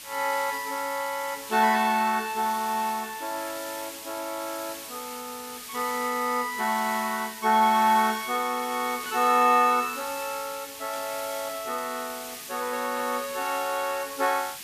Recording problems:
background hiss; slope +2 dB per octave, SNR 11 dB
static burst; 4 times, first at 1.5 s; peak -12 dB vs average level

